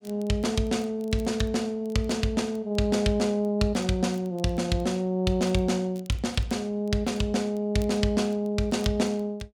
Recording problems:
crackling; vinyl, SNR 30 dB

